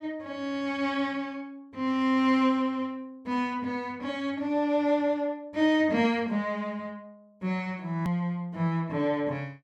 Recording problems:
click at an edit; at 8 s

